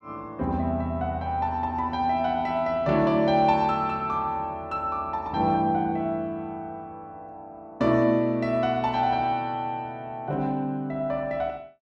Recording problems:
none

